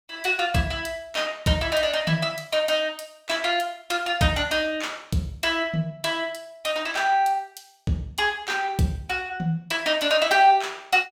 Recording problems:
none

